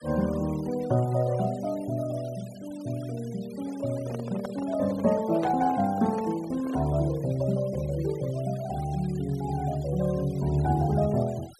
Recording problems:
noise reduction artefacts; signal-to-artefact ratio 21 dB
handling noise; from 3.5 to 7 s; peak -2 dB vs average level

